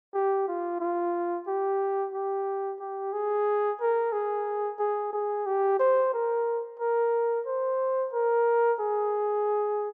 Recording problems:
none

